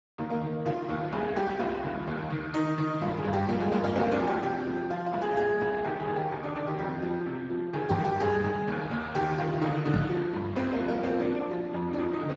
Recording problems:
codec artefacts; Speex, log-spectral distance 4 dB, nothing above 7.3 kHz
knock on the microphone; at 8 s and at 10 s; peak +4 dB vs average level

